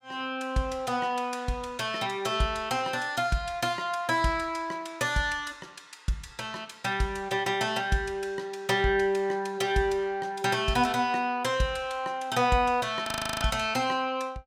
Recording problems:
frozen audio; at 13 s

